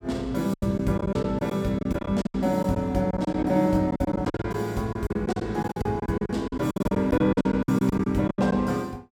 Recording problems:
packet loss; 16% of the sound replaced, filled with silence

